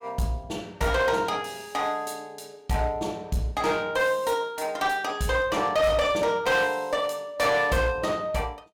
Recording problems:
distortion; hard clipping, uneven, signal-to-distortion ratio 10 dB

